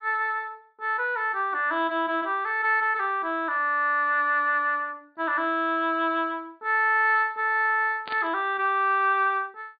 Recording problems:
treble cut off; nothing above 4.7 kHz
burst of static; at 8 s; peak -9 dB vs average level

